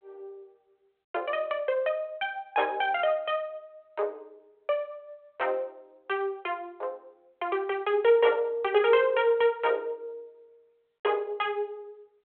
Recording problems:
telephone audio; 370 Hz to 3.4 kHz, G.726

